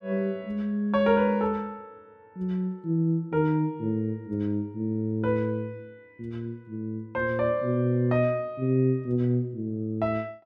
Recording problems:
none

